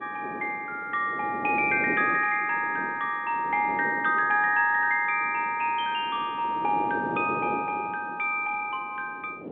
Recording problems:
phone line; 190 Hz to 3.5 kHz, G.711
wind on the microphone; below 530 Hz, SNR 13 dB

